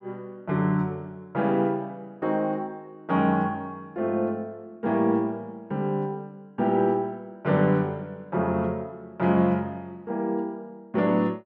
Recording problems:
none

